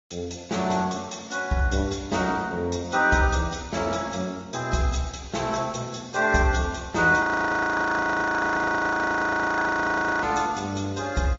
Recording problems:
low-pass filter; nothing above 7.1 kHz
codec artefacts; AAC, log-spectral distance 4 dB
frozen audio; at 7 s for 3 s

